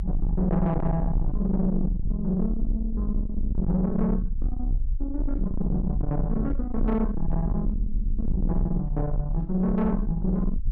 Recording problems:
distorted audio; soft clipping, signal-to-distortion ratio 8 dB
rumble; below 62 Hz, SNR 3 dB

